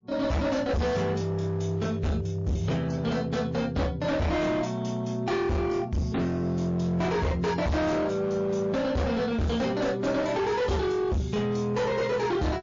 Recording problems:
lossy codec; MP3, log-spectral distance 2 dB, nothing above 6.5 kHz
distorted audio; hard clipping, signal-to-distortion ratio 7 dB

